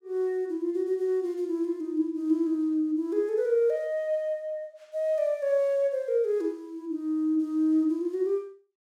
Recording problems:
none

